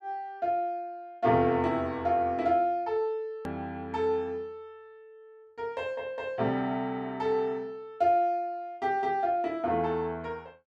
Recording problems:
click at an edit; at 3.5 s

